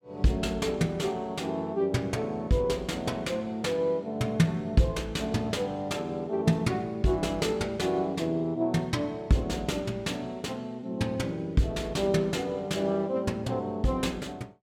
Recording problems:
none

